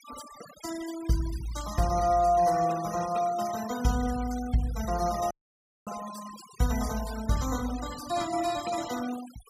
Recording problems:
denoising artefacts; signal-to-artefact ratio 13 dB
dropout; at 5.5 s for 0.5 s

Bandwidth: 15.5 kHz